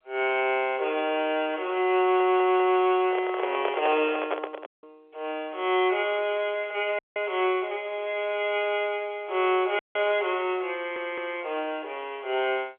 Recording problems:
phone line; 320 Hz to 3.4 kHz, G.711
stutter; at 2 s and at 11 s
microphone handling noise; from 3 to 5 s; peak +1 dB vs average level
dropout; at 4.5 s, at 7 s and at 10 s

